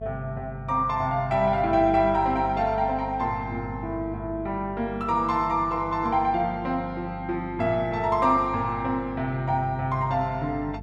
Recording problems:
hum; 50 Hz, harmonics up to 500 Hz, SNR 14 dB

